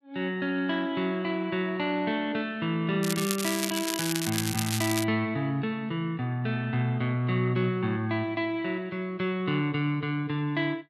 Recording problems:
crackling; from 3 to 5 s; loose cable, SNR 3 dB

